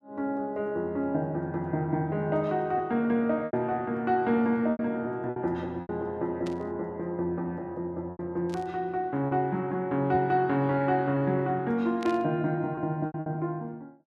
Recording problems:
packet loss; 5% of the sound replaced, filled with repeated pitch periods
static burst; at 6.5 s, at 8.5 s and at 12 s; peak -9 dB vs average level

